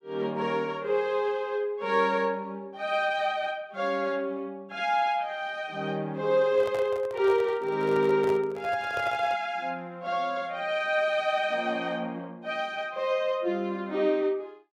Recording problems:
microphone handling noise; from 6.5 to 9.5 s; peak -6 dB vs average level

